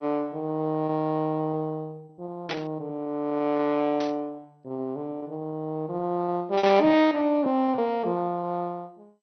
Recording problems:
lossy compression; MP2, then MP2, log-spectral distance 2 dB
lost packets; 11% of the sound replaced, filled with repeated pitch periods
burst of static; at 2.5 s, at 4 s and at 6.5 s; peak -1 dB vs average level

